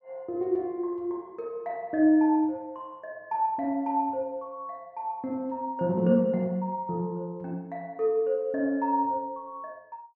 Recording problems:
none

